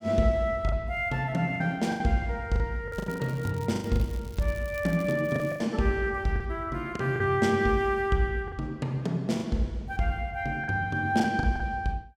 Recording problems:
lost packets; 8% of the sound replaced, filled with the last packet
crackling; from 3 to 5.5 s; loose cable, SNR 23 dB

